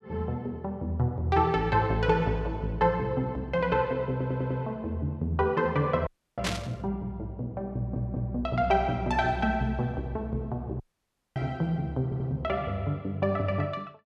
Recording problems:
stutter; at 4 s, at 7.5 s and at 12 s
audio cutting out; at 6 s and at 11 s for 0.5 s
burst of static; at 6.5 s; peak +2 dB vs average level

